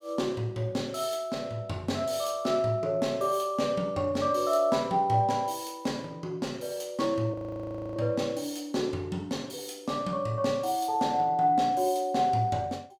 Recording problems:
audio freezing; at 7.5 s for 0.5 s

